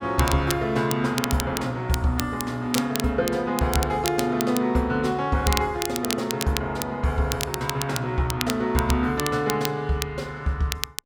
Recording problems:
crackle; vinyl, SNR 7 dB

